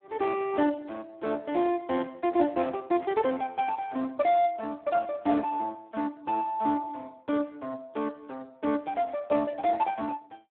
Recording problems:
phone line; 240 Hz to 2.9 kHz, Speex
burst of static; at 3 s; peak -18 dB vs average level

